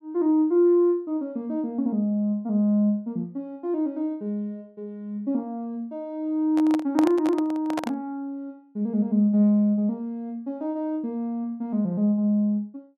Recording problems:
microphone handling noise; from 6.5 to 8 s; peak +1 dB vs average level

